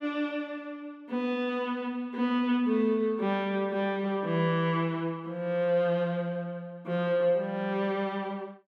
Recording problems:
none

